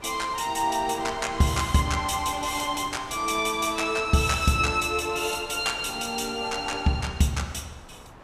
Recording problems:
wind noise; below 1.2 kHz, SNR 17 dB

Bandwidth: 14.5 kHz